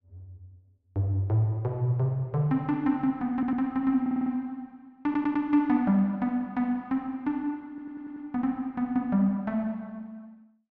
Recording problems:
audio stuttering; 4 times, first at 3.5 s

